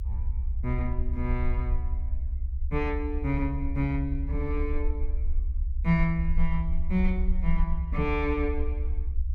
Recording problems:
low-frequency rumble; below 68 Hz, SNR 0 dB

